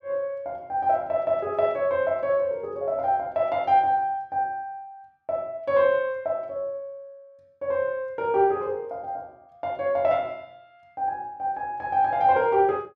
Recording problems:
none

